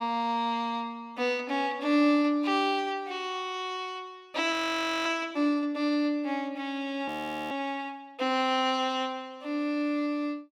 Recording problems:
audio freezing; at 4.5 s for 0.5 s and at 7 s

